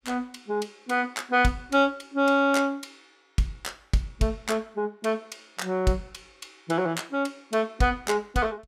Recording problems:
none

